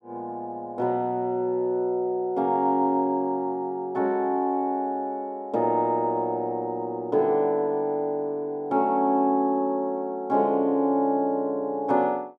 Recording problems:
none

